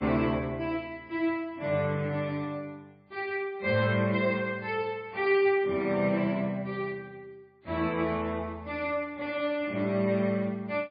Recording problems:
lossy compression; MP3, log-spectral distance 2 dB, nothing above 4.4 kHz

